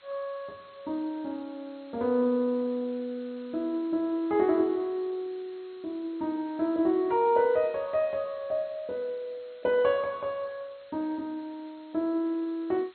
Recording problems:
lossy compression; MP2, log-spectral distance 5 dB, nothing above 4 kHz
hiss; SNR 27 dB

